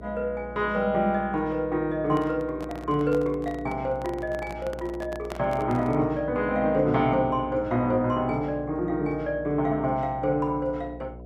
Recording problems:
hum; 60 Hz, harmonics up to 720 Hz, SNR 16 dB
microphone handling noise; from 2 to 6 s; peak -5 dB vs average level

